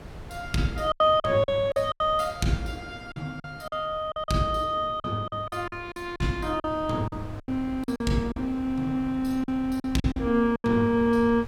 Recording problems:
wind noise; below 420 Hz, SNR 17 dB
lost packets; 11% of the sound replaced, filled with silence

